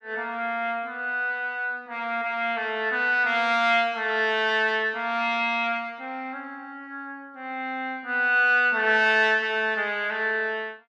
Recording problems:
none

